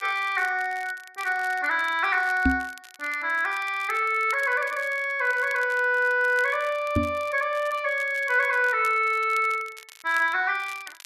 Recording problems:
crackle; vinyl, SNR 23 dB
microphone bump; at 2.5 s and at 7 s; peak +5 dB vs average level

